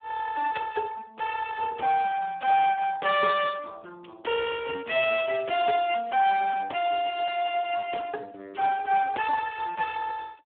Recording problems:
phone line; 320 Hz to 3.5 kHz, Speex

